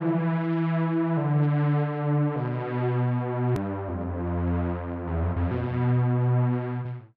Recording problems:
hard cut with a click; at 3.5 s

